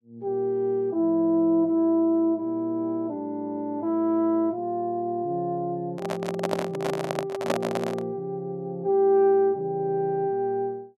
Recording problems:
microphone handling noise; from 6 to 8 s; peak +4 dB vs average level

